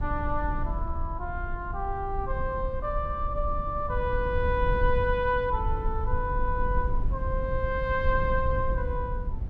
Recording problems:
low-frequency rumble; below 72 Hz, SNR 3 dB

